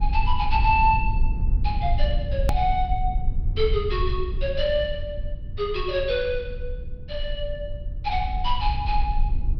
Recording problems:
treble cut off; nothing above 5.5 kHz
low-frequency rumble; below 60 Hz, SNR 3 dB
edit click; at 2.5 s

